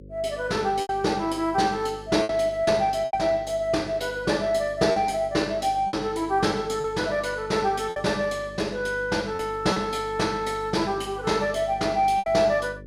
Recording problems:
hum; 50 Hz, harmonics up to 550 Hz, SNR 19 dB
packet loss; 5% of the sound replaced, filled with repeated pitch periods

